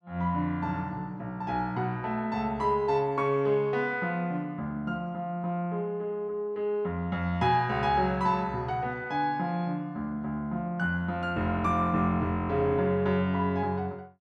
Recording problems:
none

